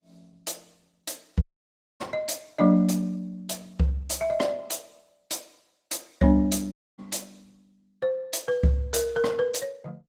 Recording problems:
codec artefacts; Opus, log-spectral distance 4 dB
audio cutting out; at 1.5 s for 0.5 s and at 6.5 s

